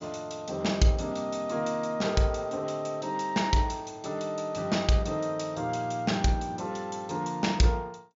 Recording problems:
treble missing; nothing above 7.3 kHz

